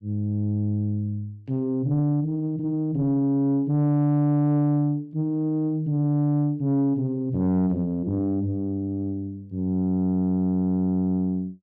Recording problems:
distorted audio; soft clipping, signal-to-distortion ratio 10 dB

